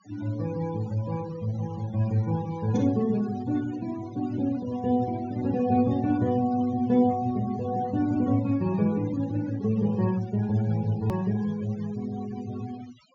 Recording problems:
low-pass filter; nothing above 7.2 kHz
noise reduction artefacts; signal-to-artefact ratio 20 dB
hard cut with a click; at 11 s

